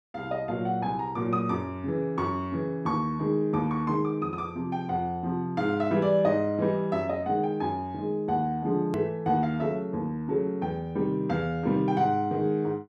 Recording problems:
click at an edit; at 9 s

